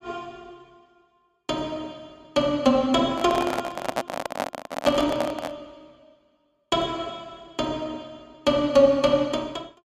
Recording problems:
microphone handling noise; from 3 to 5.5 s; peak +2 dB vs average level

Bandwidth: 14.5 kHz